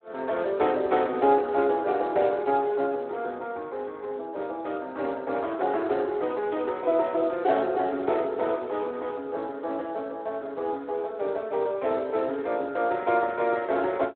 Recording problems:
phone line; 280 Hz to 3.8 kHz, Speex

